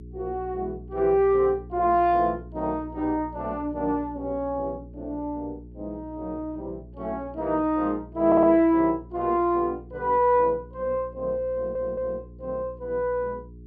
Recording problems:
hum; 60 Hz, harmonics up to 420 Hz, SNR 18 dB
audio stuttering; at 8.5 s and at 12 s

